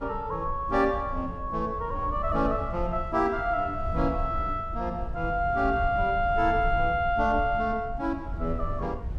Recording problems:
low-frequency rumble; below 82 Hz, SNR 9 dB

